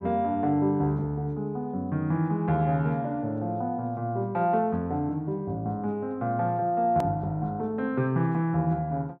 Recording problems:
hard cut with a click; at 7 s

